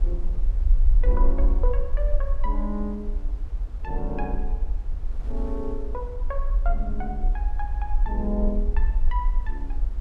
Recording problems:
low-frequency rumble; below 42 Hz, strongest tone 26 Hz, SNR -6 dB
wind on the microphone; below 600 Hz, SNR 15 dB

